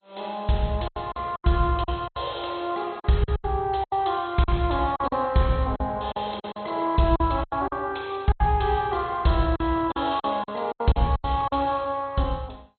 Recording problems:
codec artefacts; MP2, log-spectral distance 7 dB, nothing above 4.2 kHz
packet loss; 12% of the sound replaced, filled with silence

